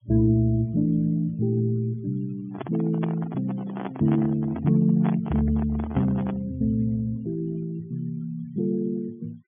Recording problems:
treble missing; nothing above 3.4 kHz
denoising artefacts; signal-to-artefact ratio 26 dB
handling noise; from 2.5 to 6.5 s; peak -4 dB vs average level

